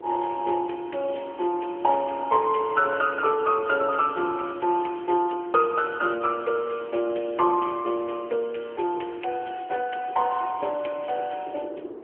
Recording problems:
phone line; 300 Hz to 3.3 kHz, AMR-NB
wind on the microphone; below 470 Hz, SNR 19 dB

